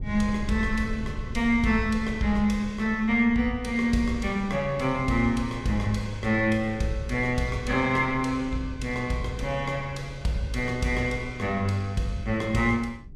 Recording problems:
low-frequency rumble; below 110 Hz, SNR 14 dB

